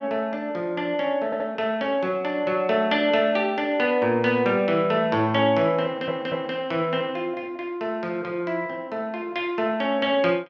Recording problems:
audio stuttering; at 1.5 s and at 6 s

